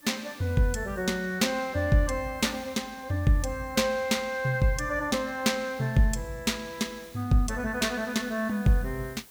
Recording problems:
background hiss; slope -2 dB per octave, SNR 25 dB

